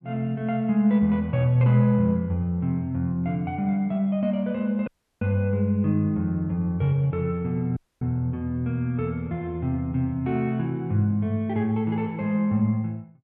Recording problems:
dropout; at 5 s and at 8 s

